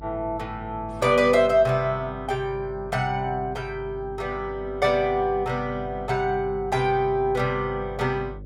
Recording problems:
hum; 50 Hz, harmonics up to 600 Hz, SNR 17 dB

